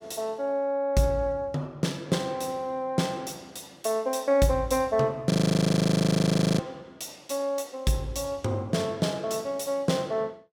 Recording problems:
frozen audio; at 5.5 s for 1.5 s

